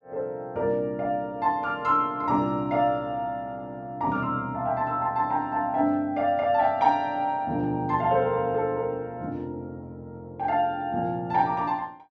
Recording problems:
none

